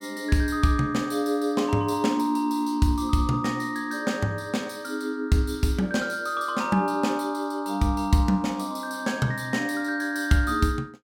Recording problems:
none

